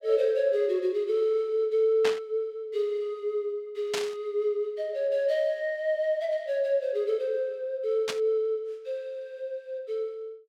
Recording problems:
burst of static; at 2 s, at 4 s and at 8 s; peak +1 dB vs average level

